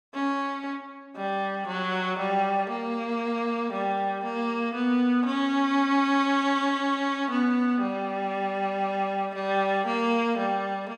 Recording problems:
none

